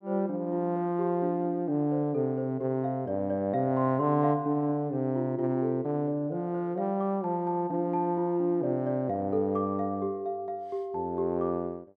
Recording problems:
none

